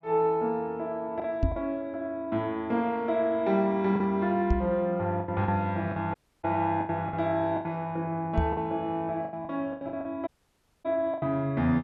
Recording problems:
low-pass filter; nothing above 8 kHz
packet loss; 8% of the sound replaced, filled with the last packet
knock on the microphone; at 1.5 s, at 4.5 s and at 8.5 s; peak +6 dB vs average level
audio cutting out; at 6 s and at 10 s for 0.5 s

